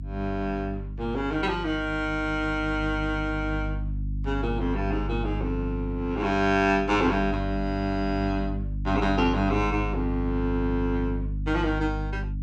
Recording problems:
hum; 50 Hz, harmonics up to 300 Hz, SNR 5 dB

